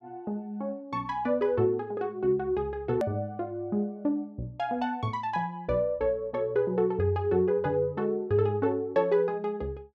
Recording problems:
hard cut with a click; at 3 s

